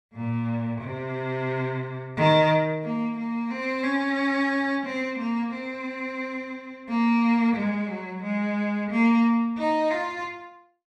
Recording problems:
none

